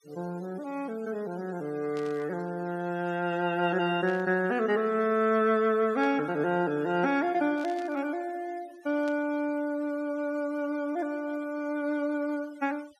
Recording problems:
denoising artefacts; signal-to-artefact ratio 24 dB
burst of static; 5 times, first at 2 s; peak -13 dB vs average level

